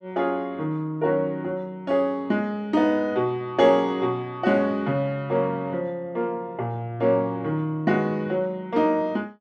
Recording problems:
none

